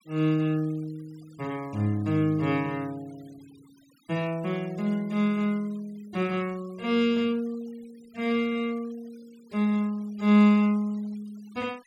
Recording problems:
noise reduction artefacts; signal-to-artefact ratio 27 dB

